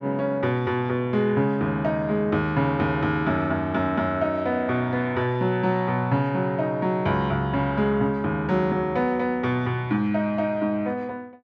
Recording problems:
none

